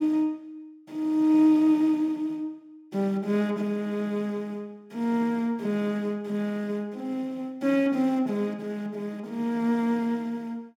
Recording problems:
none

